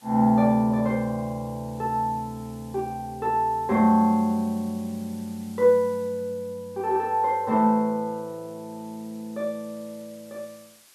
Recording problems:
hiss; slope +1 dB per octave, SNR 27 dB

